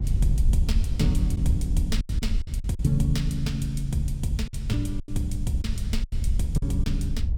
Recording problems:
wind noise; below 72 Hz, SNR 0 dB
packet loss; 7% of the sound replaced, filled with silence

